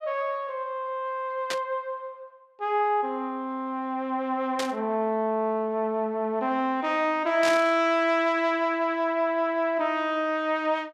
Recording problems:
burst of static; at 1.5 s, at 4.5 s and at 7.5 s; peak 0 dB vs average level

